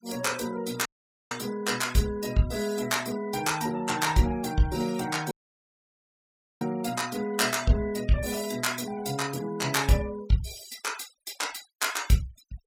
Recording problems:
noise reduction artefacts; signal-to-artefact ratio 18 dB
dropout; at 1 s and at 5.5 s for 1.5 s

